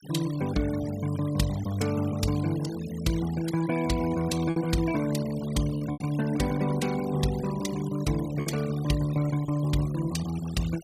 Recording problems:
noise reduction artefacts; signal-to-artefact ratio 16 dB
packet loss; 3% of the sound replaced, filled with repeated pitch periods

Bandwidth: 15 kHz